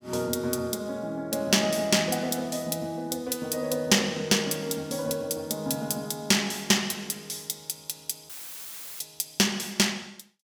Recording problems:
audio cutting out; at 8.5 s for 0.5 s; filled with static

